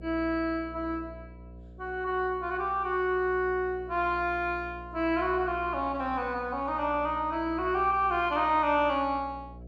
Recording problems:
hum; 60 Hz, harmonics up to 720 Hz, SNR 18 dB

